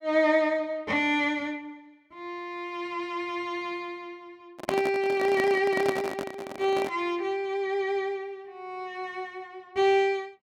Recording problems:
handling noise; from 4.5 to 7 s; peak +2 dB vs average level

